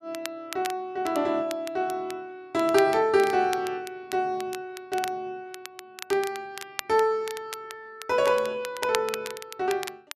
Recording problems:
crackle; vinyl, SNR 13 dB

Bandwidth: 13.5 kHz